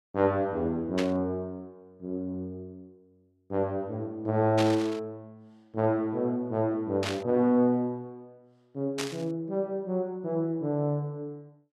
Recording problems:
burst of static; 4 times, first at 1 s; peak 0 dB vs average level

